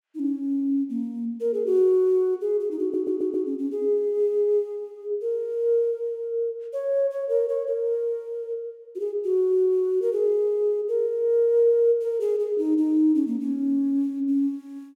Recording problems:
audio stuttering; at 3 s

